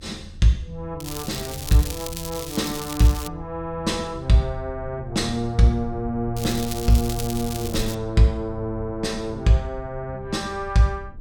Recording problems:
rumble; below 82 Hz, SNR 15 dB
crackle; from 1 to 3.5 s and from 6.5 to 8 s; loose cable, SNR 10 dB

